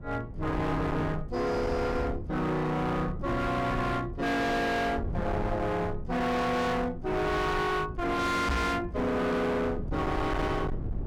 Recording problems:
distortion; hard clipping, uneven, signal-to-distortion ratio 6 dB
low-frequency rumble; below 270 Hz, SNR 8 dB
microphone bump; at 8.5 s; peak +4 dB vs average level

